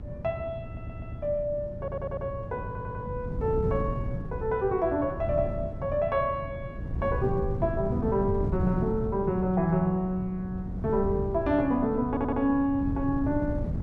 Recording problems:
hum; 60 Hz, harmonics up to 720 Hz, SNR 19 dB
wind noise; below 180 Hz, SNR 6 dB
audio stuttering; 4 times, first at 0.5 s

